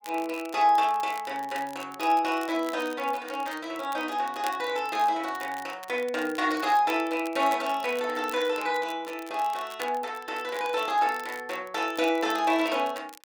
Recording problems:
crackle; vinyl, SNR 19 dB

